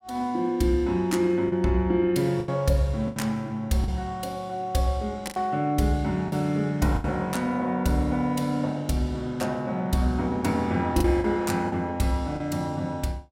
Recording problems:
packet loss; 5% of the sound replaced, filled with the last packet

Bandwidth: 16.5 kHz